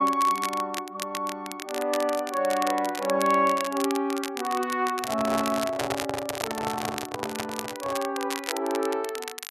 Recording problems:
crackling; vinyl, SNR 9 dB
microphone handling noise; from 5 to 8 s; peak +2 dB vs average level

